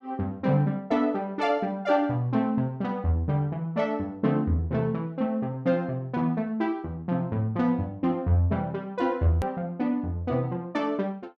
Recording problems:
hard cut with a click; at 9.5 s

